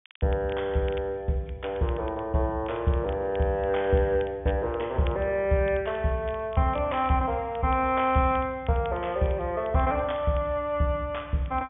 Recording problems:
treble cut off; nothing above 3.5 kHz
crackling; vinyl, SNR 25 dB

